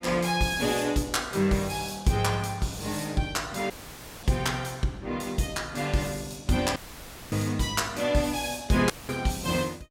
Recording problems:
audio cutting out; at 3.5 s for 0.5 s, at 7 s for 0.5 s and at 9 s; filled with static

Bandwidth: 16.5 kHz